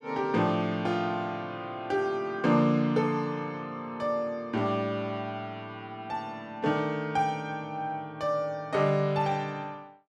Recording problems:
none

